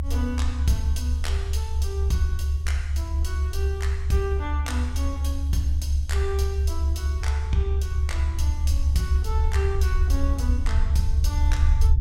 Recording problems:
low-frequency rumble; below 74 Hz, strongest tone 72 Hz, SNR -7 dB

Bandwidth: 16.5 kHz